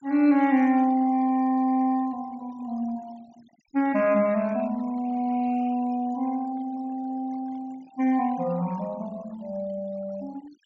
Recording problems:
treble cut off; nothing above 7.7 kHz
denoising artefacts; signal-to-artefact ratio 24 dB

